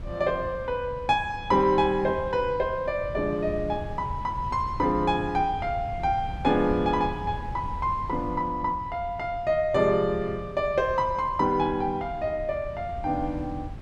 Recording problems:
wind on the microphone; below 140 Hz, SNR 13 dB

